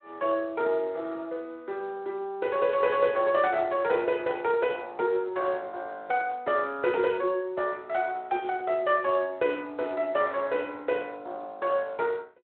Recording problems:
telephone audio; 280 Hz to 3.5 kHz, Speex

